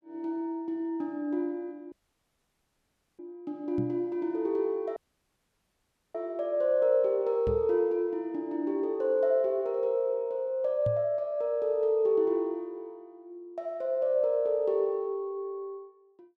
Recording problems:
dropout; at 2 s for 1.5 s and at 5 s for 1 s
microphone thump; at 4 s, at 7.5 s and at 11 s; peak -1 dB vs average level

